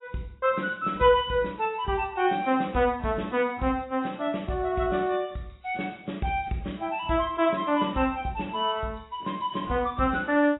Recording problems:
codec artefacts; AAC, log-spectral distance 5 dB, nothing above 3.2 kHz

